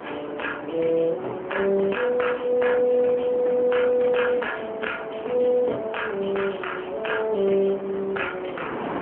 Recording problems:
telephone audio; 260 Hz to 3.3 kHz, AMR-NB
wind noise; below 1 kHz, SNR 12 dB

